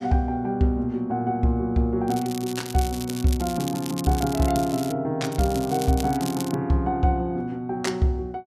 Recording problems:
crackle; from 2 to 5 s and from 5 to 6.5 s; loose cable, SNR 13 dB

